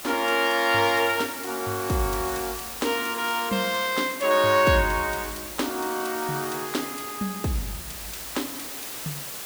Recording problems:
hiss; slope -1 dB per octave, SNR 9 dB

